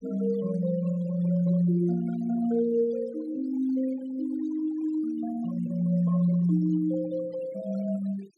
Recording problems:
noise reduction artefacts; signal-to-artefact ratio 21 dB

